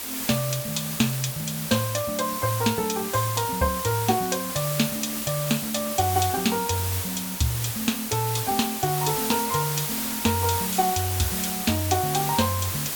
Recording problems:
hiss; slope -1 dB per octave, SNR 3 dB

